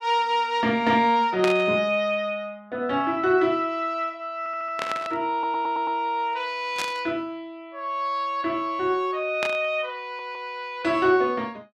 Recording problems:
burst of static; 4 times, first at 1.5 s; peak 0 dB vs average level
stutter; at 4.5 s, at 5.5 s and at 10 s

